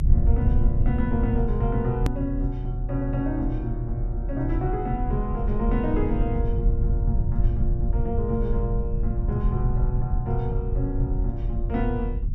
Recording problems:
rumble; below 78 Hz, SNR -2 dB
hard cut with a click; at 2 s

